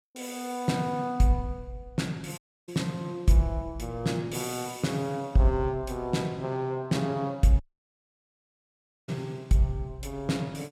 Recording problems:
audio cutting out; at 2.5 s and at 7.5 s for 1.5 s

